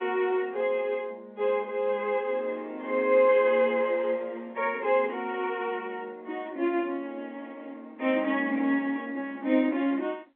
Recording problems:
phone line; 240 Hz to 3.7 kHz, G.711

